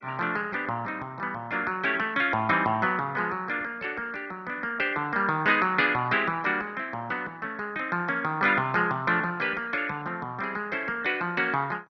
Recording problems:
codec artefacts; MP2, log-spectral distance 3 dB, nothing above 5.8 kHz

